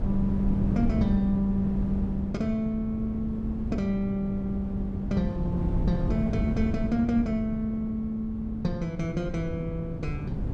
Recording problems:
hum; 50 Hz, harmonics up to 300 Hz, SNR 18 dB
wind noise; below 180 Hz, SNR 4 dB

